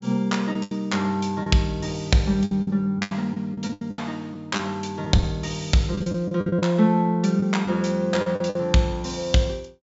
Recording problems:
low-pass filter; nothing above 8 kHz
lost packets; 10% of the sound replaced, filled with the last packet

